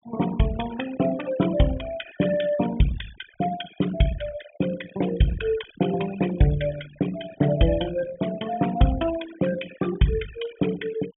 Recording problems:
treble missing; nothing above 3.6 kHz
denoising artefacts; signal-to-artefact ratio 14 dB

